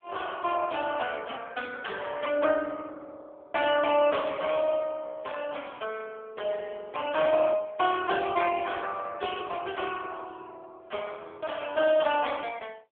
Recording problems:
phone line; 340 Hz to 3.4 kHz, AMR-NB

